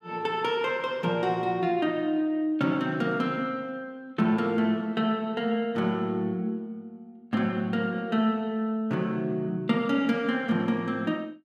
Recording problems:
none

